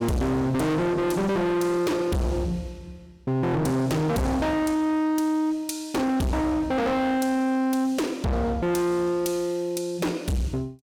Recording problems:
distortion; hard clipping, signal-to-distortion ratio 6 dB

